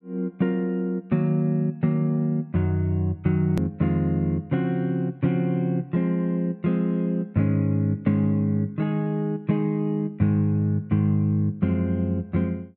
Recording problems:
click at an edit; at 3.5 s

